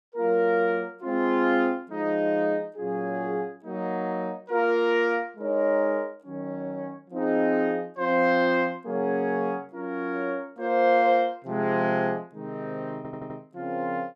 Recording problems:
stutter; at 13 s

